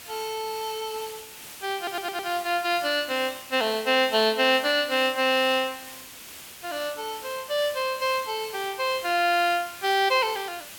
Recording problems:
hiss; slope 0 dB per octave, SNR 15 dB
audio stuttering; at 2 s

